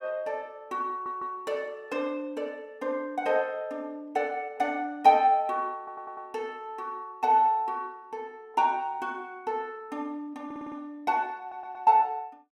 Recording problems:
stutter; 4 times, first at 1 s

